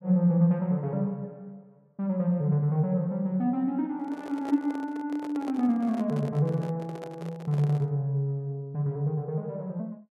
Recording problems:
handling noise; from 4 to 8 s; peak -7 dB vs average level

